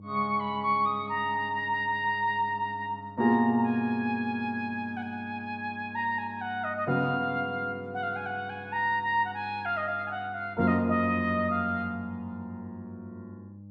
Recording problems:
electrical hum; 50 Hz, harmonics up to 600 Hz, SNR 18 dB

